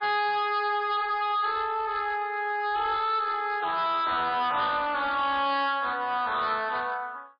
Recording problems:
lossy codec; MP3, log-spectral distance 3 dB, nothing above 4.1 kHz
distorted audio; hard clipping, signal-to-distortion ratio 10 dB

